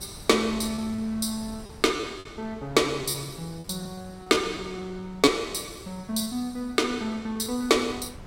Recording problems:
wind on the microphone; below 350 Hz, SNR 19 dB
lost packets; 9% of the sound replaced, filled with repeated pitch periods

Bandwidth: 16 kHz